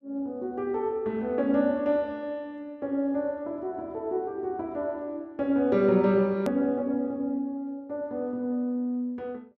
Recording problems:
edit click; at 6.5 s

